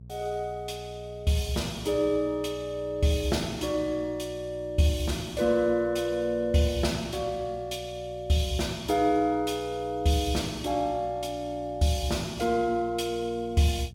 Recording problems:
electrical hum; 60 Hz, harmonics up to 420 Hz, SNR 18 dB

